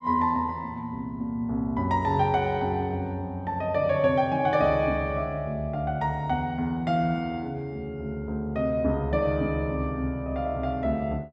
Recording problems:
none

